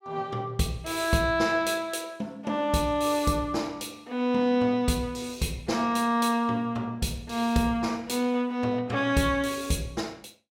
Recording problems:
none

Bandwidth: 17 kHz